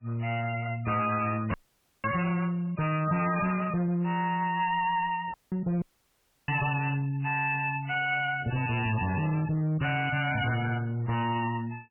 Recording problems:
lossy codec; MP3, log-spectral distance 5 dB, nothing above 2.4 kHz
distortion; hard clipping, uneven, signal-to-distortion ratio 6 dB
dropout; at 1.5 s for 0.5 s, at 5.5 s and at 6 s for 0.5 s

